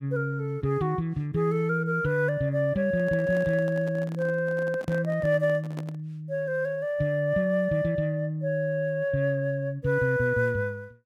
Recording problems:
microphone handling noise; from 3 to 6 s; peak -8 dB vs average level

